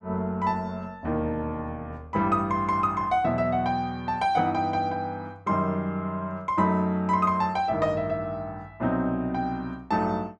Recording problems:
none

